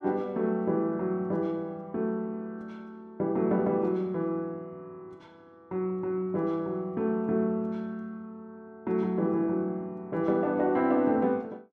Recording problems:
none

